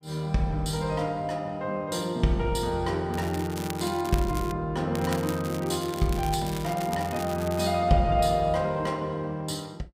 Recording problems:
crackling; from 3 to 4.5 s and from 5 to 7.5 s; loose cable, SNR 14 dB

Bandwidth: 15.5 kHz